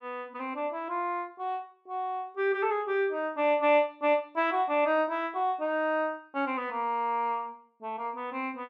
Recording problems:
none

